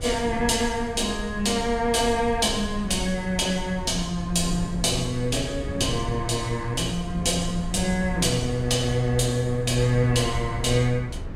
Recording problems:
low-frequency rumble; below 120 Hz, SNR 11 dB
wind noise; below 250 Hz, SNR 17 dB

